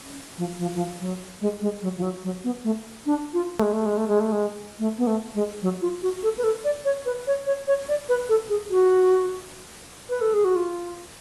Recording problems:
lossy codec; AAC, log-spectral distance 8 dB, nothing above 19.5 kHz
background hiss; slope -3 dB per octave, SNR 18 dB
edit click; at 3.5 s

